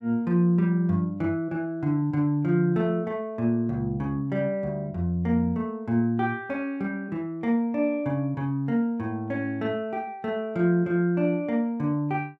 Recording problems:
none

